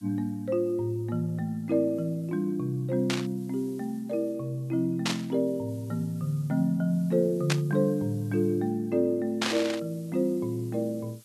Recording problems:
hiss; SNR 28 dB
burst of static; 4 times, first at 3 s; peak +4 dB vs average level

